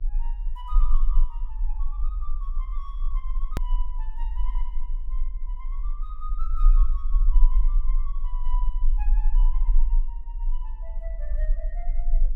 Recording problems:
electrical hum; 60 Hz, harmonics up to 1.4 kHz, SNR 22 dB
rumble; below 34 Hz, strongest tone 20 Hz, SNR -18 dB
edit click; at 3.5 s

